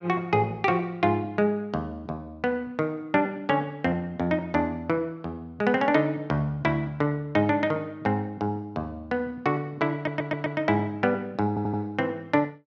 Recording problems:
stutter; at 10 s and at 11 s

